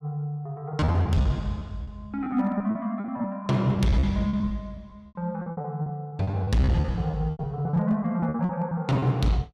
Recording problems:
distortion; hard clipping, uneven, signal-to-distortion ratio 11 dB
lost packets; 17% of the sound replaced, filled with repeated pitch periods

